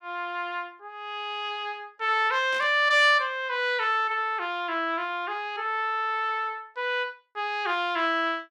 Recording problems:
static burst; at 2.5 s; peak -11 dB vs average level

